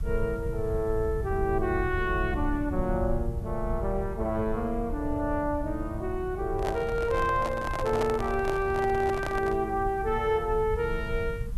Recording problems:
background hiss; slope -4 dB per octave, SNR 29 dB
low-frequency rumble; below 96 Hz, SNR 7 dB
handling noise; from 6.5 to 9.5 s; peak +1 dB vs average level

